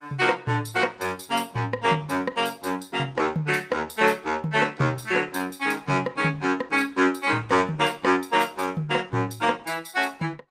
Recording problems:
lossy codec; Opus, log-spectral distance 4 dB, nothing above 15.5 kHz

